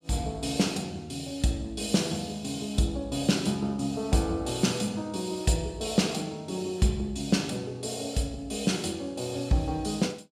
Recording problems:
none

